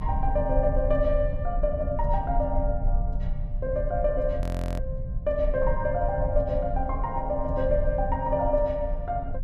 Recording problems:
rumble; below 70 Hz, strongest tone 32 Hz, SNR 3 dB
audio freezing; at 4.5 s

